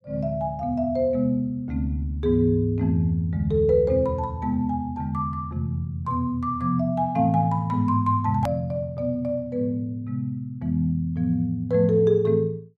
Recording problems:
edit click; at 8.5 s

